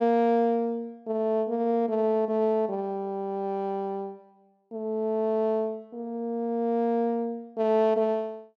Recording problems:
none

